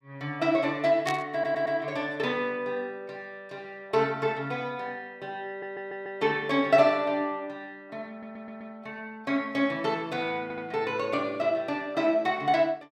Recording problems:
static burst; at 1 s; peak -2 dB vs average level
stutter; 4 times, first at 1.5 s

